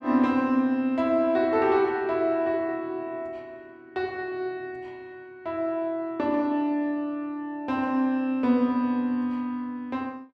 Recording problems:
none

